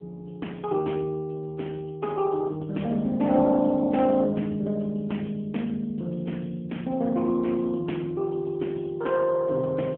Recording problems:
phone line; 170 Hz to 3.7 kHz, AMR-NB

